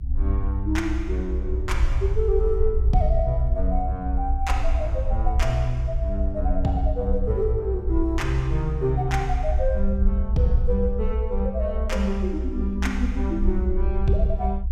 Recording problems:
low-frequency rumble; below 64 Hz, SNR 0 dB

